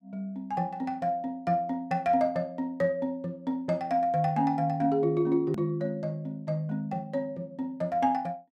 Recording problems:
click at an edit; at 5.5 s

